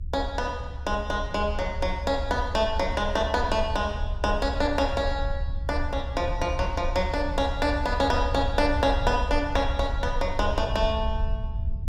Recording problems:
low-frequency rumble; below 70 Hz, SNR 5 dB

